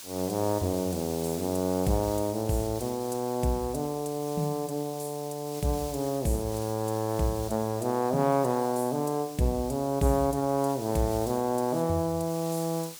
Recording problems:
hiss; slope +2 dB per octave, SNR 14 dB

